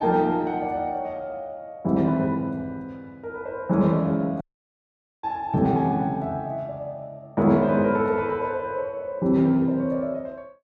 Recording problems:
audio cutting out; at 4.5 s for 1 s

